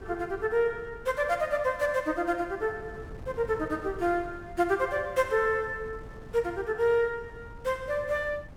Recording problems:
wind noise; below 250 Hz, SNR 18 dB

